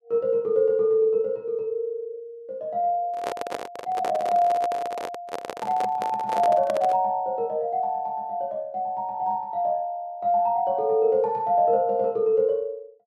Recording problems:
microphone handling noise; from 3 to 7 s; peak -2 dB vs average level

